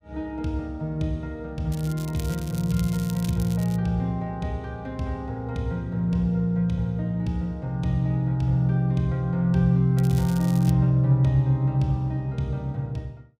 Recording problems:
crackle; from 1.5 to 4 s and at 10 s; loose cable, SNR 18 dB

